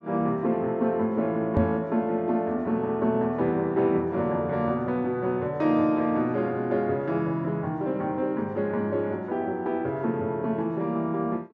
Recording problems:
knock on the microphone; at 1.5 s; peak +3 dB vs average level

